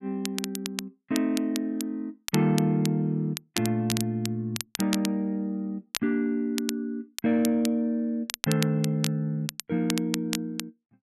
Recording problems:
crackling; vinyl, SNR 8 dB

